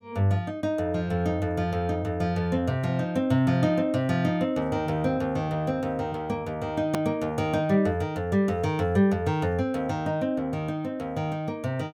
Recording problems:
edit click; at 7 s

